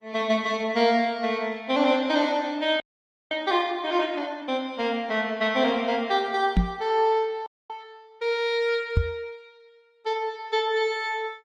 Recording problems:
lossy codec; Opus, log-spectral distance 2 dB
audio freezing; at 3 s for 0.5 s and at 7.5 s
microphone bump; at 6.5 s and at 9 s; peak +7 dB vs average level

